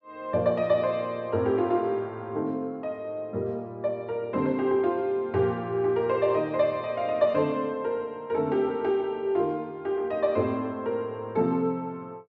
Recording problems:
none

